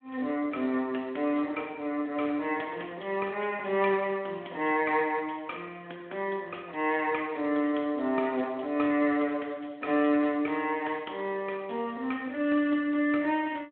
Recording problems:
telephone audio; 220 Hz to 3.4 kHz, Speex

